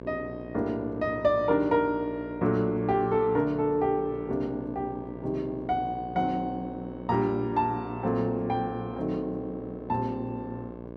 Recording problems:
electrical hum; 60 Hz, harmonics up to 1.2 kHz, SNR 12 dB

